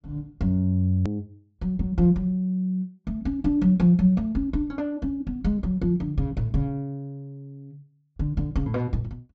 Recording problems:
treble missing; nothing above 8 kHz
hard cut with a click; at 1 s

